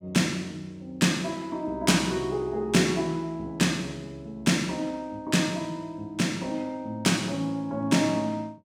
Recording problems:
none

